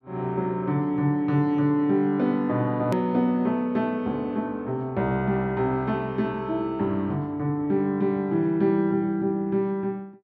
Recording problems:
click at an edit; at 3 s

